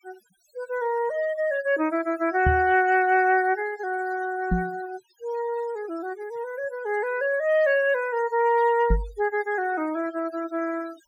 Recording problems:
denoising artefacts; signal-to-artefact ratio 20 dB
microphone bump; at 2.5 s, at 4.5 s and at 9 s; peak +4 dB vs average level

